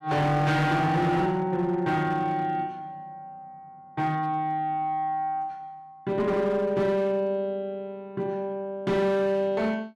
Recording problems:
distortion; hard clipping, signal-to-distortion ratio 10 dB

